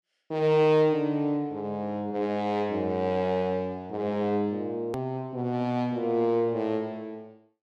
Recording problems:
edit click; at 5 s

